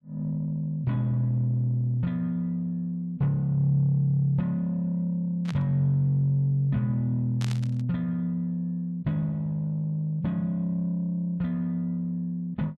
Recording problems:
burst of static; at 5.5 s and at 7.5 s; peak -7 dB vs average level

